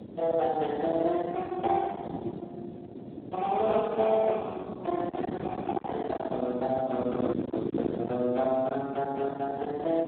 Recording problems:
telephone audio; 170 Hz to 2.8 kHz, Speex
distorted audio; soft clipping, signal-to-distortion ratio 7 dB
wind on the microphone; below 670 Hz, SNR 9 dB

